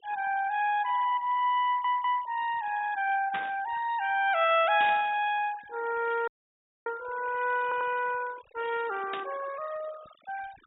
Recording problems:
treble cut off; nothing above 4 kHz
noise reduction artefacts; signal-to-artefact ratio 19 dB
stutter; at 1.5 s and at 7.5 s
static burst; at 3.5 s, at 5 s and at 9 s; peak -4 dB vs average level
dropout; at 6.5 s for 0.5 s

